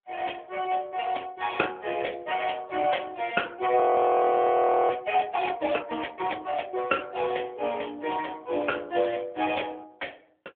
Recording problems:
phone line; 240 Hz to 3.5 kHz, AMR-NB
audio freezing; at 4 s for 1 s

